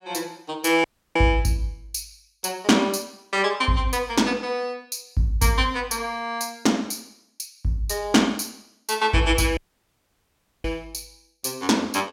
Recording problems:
dropout; at 1 s and at 9.5 s for 1 s

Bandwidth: 16.5 kHz